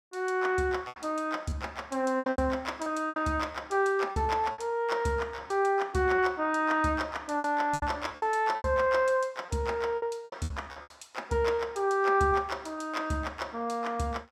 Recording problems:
lost packets; 9% of the sound replaced, filled with repeated pitch periods

